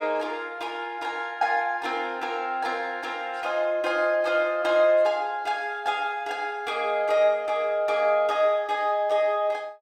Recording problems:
none

